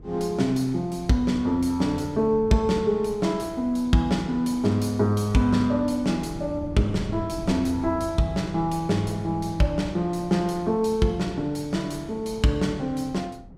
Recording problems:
wind noise; below 190 Hz, SNR 17 dB

